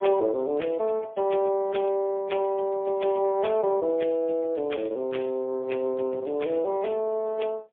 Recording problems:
phone line; 220 Hz to 3.5 kHz, AMR-NB, then MP3

